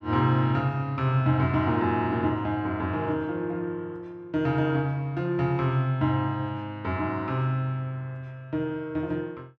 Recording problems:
none

